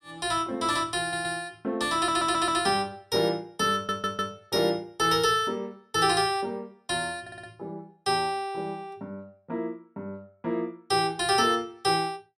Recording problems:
stutter; 4 times, first at 1 s

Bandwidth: 16 kHz